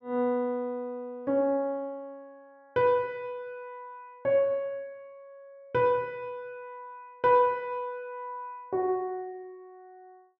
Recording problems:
none

